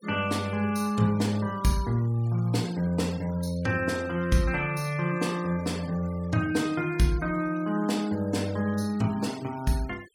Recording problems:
denoising artefacts; signal-to-artefact ratio 21 dB

